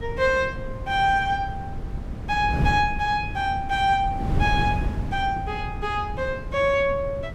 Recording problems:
wind on the microphone; below 170 Hz, SNR 7 dB

